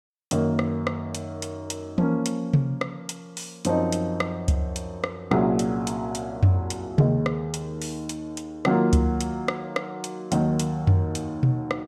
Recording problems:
none

